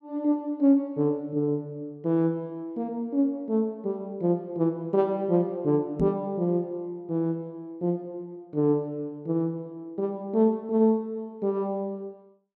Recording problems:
knock on the microphone; at 6 s; peak +3 dB vs average level

